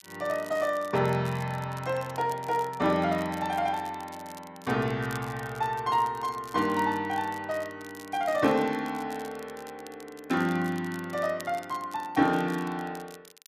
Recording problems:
crackle; vinyl, SNR 21 dB

